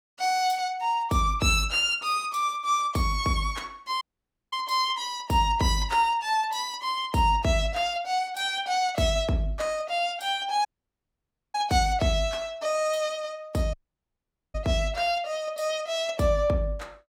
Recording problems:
audio cutting out; at 4 s for 0.5 s, at 11 s for 1 s and at 14 s for 1 s

